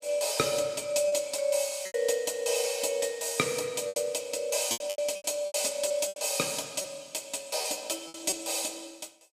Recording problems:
packet loss; 8% of the sound replaced, filled with repeated pitch periods

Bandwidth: 15 kHz